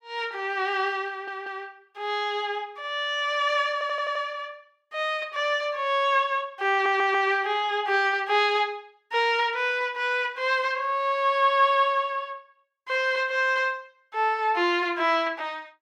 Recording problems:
audio stuttering; at 1 s, at 3.5 s and at 6.5 s

